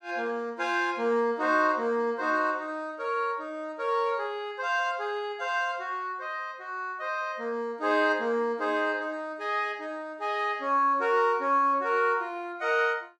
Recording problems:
none

